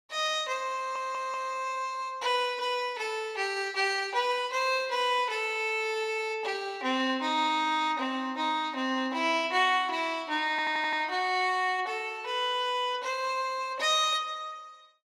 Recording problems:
audio stuttering; at 1 s and at 11 s

